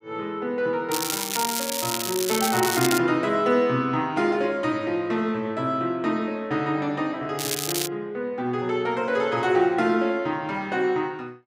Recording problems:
crackling; from 1 to 3 s and at 7.5 s; loose cable, SNR 3 dB

